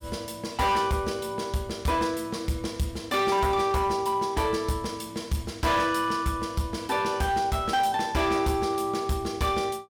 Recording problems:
distorted audio; hard clipping, signal-to-distortion ratio 11 dB

